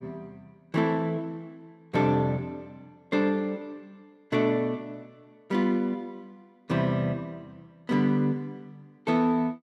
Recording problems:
none

